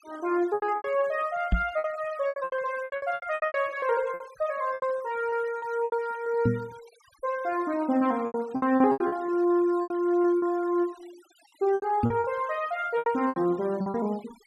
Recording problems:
noise reduction artefacts; signal-to-artefact ratio 23 dB
packet loss; 15% of the sound replaced, filled with repeated pitch periods
knock on the microphone; at 1.5 s, at 6.5 s and at 12 s; peak +6 dB vs average level

